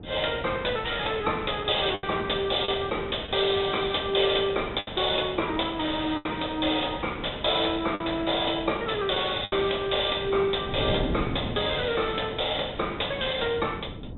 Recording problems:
low-pass filter; nothing above 3.9 kHz
wind noise; below 320 Hz, SNR 12 dB
packet loss; 3% of the sound replaced, filled with the last packet

